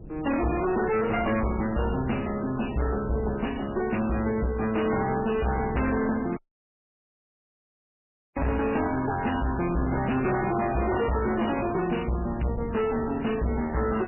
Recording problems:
codec artefacts; MP3, log-spectral distance 5 dB, nothing above 2.9 kHz
distorted audio; hard clipping, uneven, signal-to-distortion ratio 6 dB
hum; 50 Hz, harmonics up to 500 Hz, SNR 22 dB
wind noise; below 260 Hz, SNR 13 dB
dropout; at 6.5 s for 2 s

